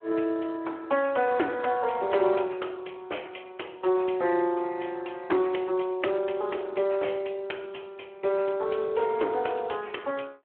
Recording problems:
telephone audio; 300 Hz to 3.2 kHz, Speex

